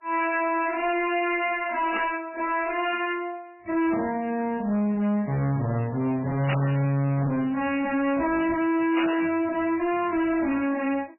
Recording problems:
codec artefacts; MP3, log-spectral distance 4 dB, nothing above 2.4 kHz
distortion; hard clipping, uneven, signal-to-distortion ratio 6 dB
burst of static; at 2 s, at 6.5 s and at 9 s; peak -1 dB vs average level

